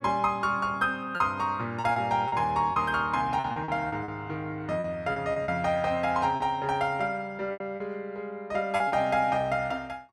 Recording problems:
packet loss; 8% of the sound replaced, filled with repeated pitch periods

